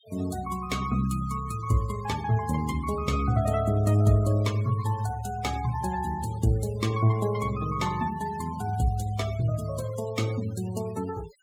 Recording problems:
noise reduction artefacts; signal-to-artefact ratio 18 dB

